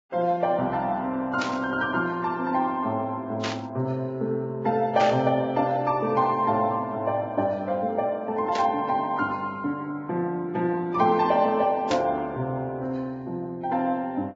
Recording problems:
codec artefacts; Vorbis, log-spectral distance 2 dB
burst of static; 5 times, first at 1.5 s; peak -2 dB vs average level

